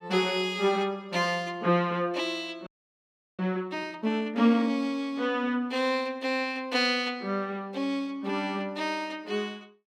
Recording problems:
audio freezing; at 2.5 s for 0.5 s

